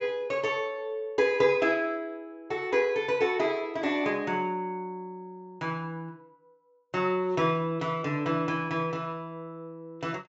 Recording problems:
treble missing; nothing above 8 kHz

